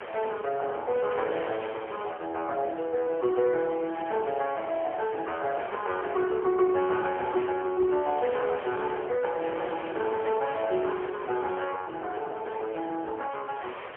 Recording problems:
phone line; 340 Hz to 2 kHz, AMR-NB, then MP3
wind on the microphone; below 1.9 kHz, SNR 14 dB

